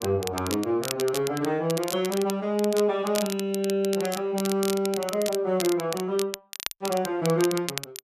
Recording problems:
crackle; vinyl, SNR 9 dB

